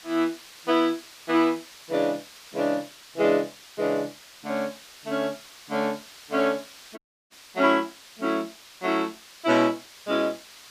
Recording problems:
background hiss; slope +2 dB per octave, SNR 19 dB
audio cutting out; at 7 s

